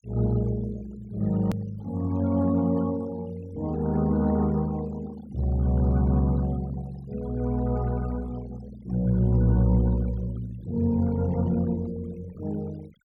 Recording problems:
noise reduction artefacts; signal-to-artefact ratio 23 dB
edit click; at 1.5 s

